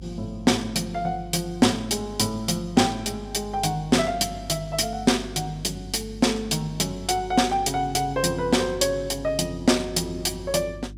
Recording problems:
hum; 50 Hz, harmonics up to 350 Hz, SNR 16 dB

